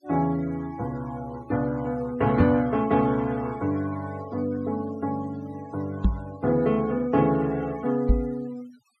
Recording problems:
noise reduction artefacts; signal-to-artefact ratio 23 dB
microphone thump; at 2.5 s, at 6 s and at 8 s; peak +8 dB vs average level

